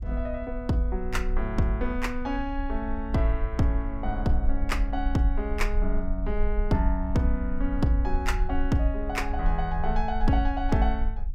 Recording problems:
rumble; below 50 Hz, strongest tone 20 Hz, SNR 4 dB

